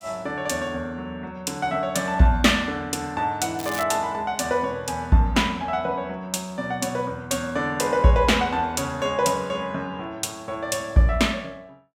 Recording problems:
crackling; at 3.5 s; loose cable, SNR 13 dB

